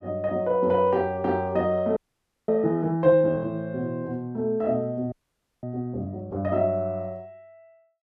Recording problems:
frozen audio; at 2 s for 0.5 s and at 5 s for 0.5 s

